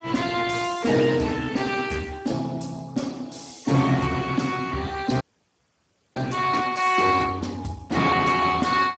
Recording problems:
lossy compression; Speex, log-spectral distance 6 dB, nothing above 7.6 kHz
audio freezing; at 5 s for 1 s

